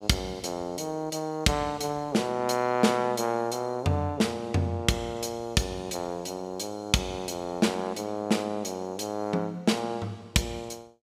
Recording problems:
none

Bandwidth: 15.5 kHz